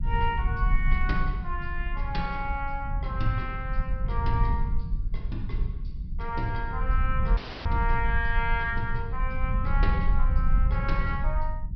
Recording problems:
low-pass filter; nothing above 5.5 kHz
rumble; below 60 Hz, SNR -2 dB
audio cutting out; at 7.5 s

